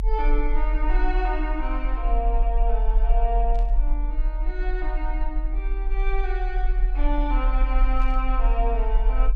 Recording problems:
low-frequency rumble; below 40 Hz, strongest tone 40 Hz, SNR -5 dB
burst of static; at 3.5 s and at 8 s; peak -14 dB vs average level

